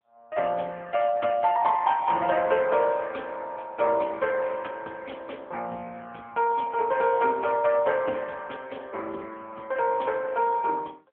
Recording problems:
phone line; 280 Hz to 3.4 kHz, AMR-NB

